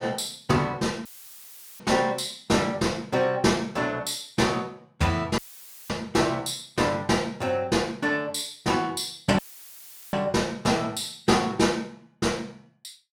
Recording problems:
audio cutting out; at 1 s for 1 s, at 5.5 s for 0.5 s and at 9.5 s for 0.5 s; filled with static

